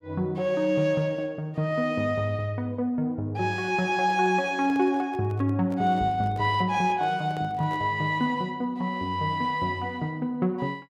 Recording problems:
microphone handling noise; from 4 to 8 s; peak -11 dB vs average level

